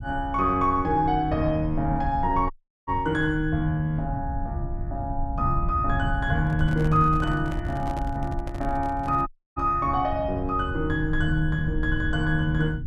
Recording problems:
rumble; below 100 Hz, SNR 7 dB
dropout; at 2.5 s and at 9.5 s
handling noise; from 6.5 to 9.5 s; peak -8 dB vs average level

